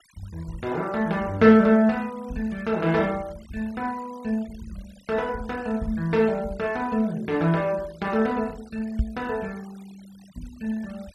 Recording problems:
denoising artefacts; signal-to-artefact ratio 25 dB
microphone thump; at 9 s; peak +3 dB vs average level

